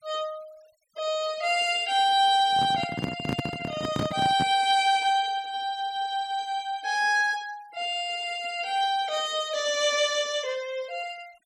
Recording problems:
noise reduction artefacts; signal-to-artefact ratio 23 dB
handling noise; from 2.5 to 4.5 s; peak 0 dB vs average level

